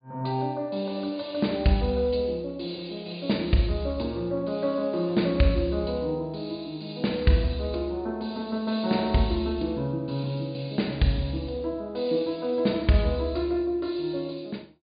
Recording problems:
treble cut off; nothing above 4.8 kHz

